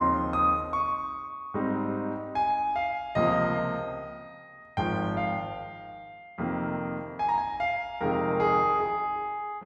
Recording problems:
none

